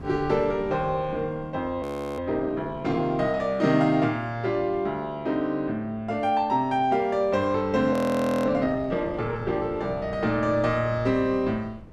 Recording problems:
wind on the microphone; below 340 Hz, SNR 19 dB
audio freezing; at 2 s and at 8 s for 0.5 s

